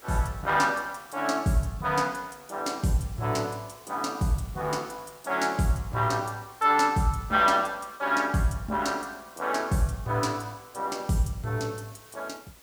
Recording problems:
background hiss; slope -2 dB per octave, SNR 24 dB

